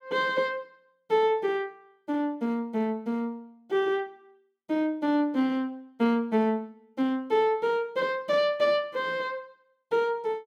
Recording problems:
none

